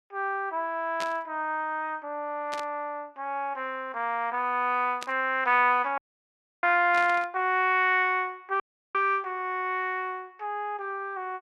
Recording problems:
burst of static; 4 times, first at 1 s; peak -4 dB vs average level
audio cutting out; at 6 s for 0.5 s and at 8.5 s

